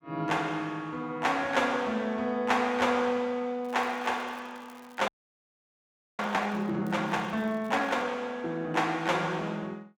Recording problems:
crackling; from 3.5 to 6.5 s and from 7 to 8 s; loose cable, SNR 29 dB
audio freezing; at 5 s for 1 s

